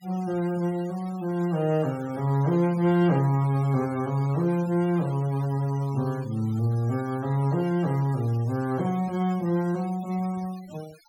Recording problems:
noise reduction artefacts; signal-to-artefact ratio 23 dB

